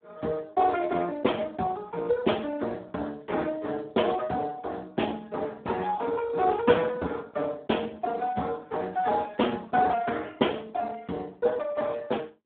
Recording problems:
telephone audio; 190 Hz to 3.5 kHz, Speex

